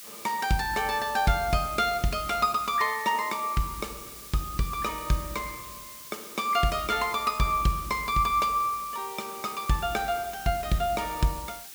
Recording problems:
background hiss; SNR 13 dB

